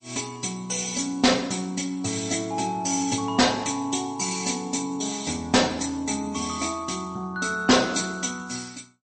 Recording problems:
lossy codec; MP3, log-spectral distance 8 dB, nothing above 8.2 kHz
distortion; hard clipping, signal-to-distortion ratio 10 dB

